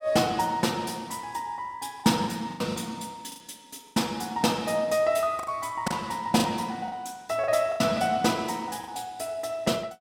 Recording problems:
lost packets; 7% of the sound replaced, filled with the last packet

